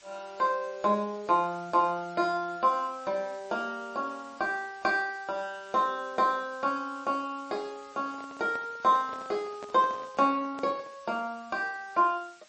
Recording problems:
lossy codec; MP3, log-spectral distance 6 dB, nothing above 7.1 kHz
hiss; slope +1 dB per octave, SNR 25 dB
handling noise; from 8 to 11 s; peak -10 dB vs average level

